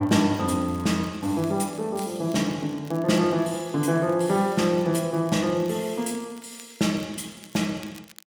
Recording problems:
crackle; vinyl, SNR 25 dB

